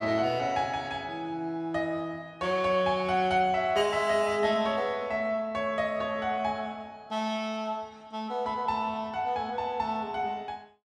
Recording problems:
none

